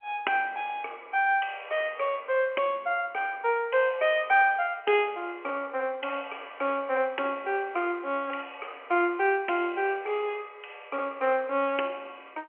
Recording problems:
telephone audio; 300 Hz to 3.1 kHz, G.711

